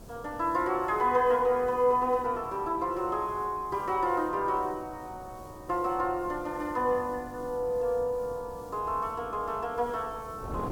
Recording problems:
background hiss; SNR 28 dB
wind on the microphone; below 520 Hz, SNR 18 dB

